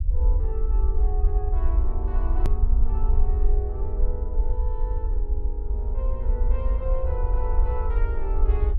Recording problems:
low-frequency rumble; below 54 Hz, SNR -11 dB
click at an edit; at 2.5 s

